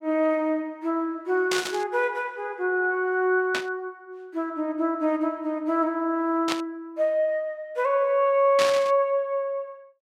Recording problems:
burst of static; 4 times, first at 1.5 s; peak +2 dB vs average level

